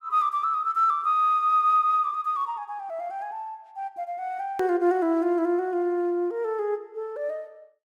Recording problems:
click at an edit; at 4.5 s

